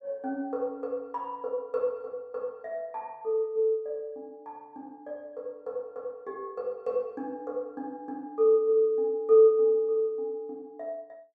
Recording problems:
none

